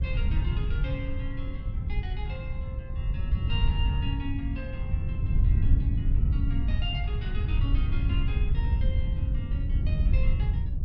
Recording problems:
wind on the microphone; below 90 Hz, SNR -11 dB

